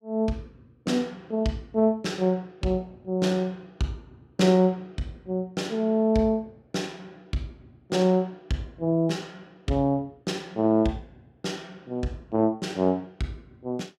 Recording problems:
none

